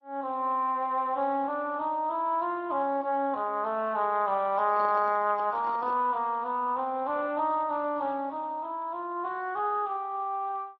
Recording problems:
lossy compression; Speex, then MP3, log-spectral distance 2 dB
handling noise; from 4.5 to 6 s; peak -9 dB vs average level

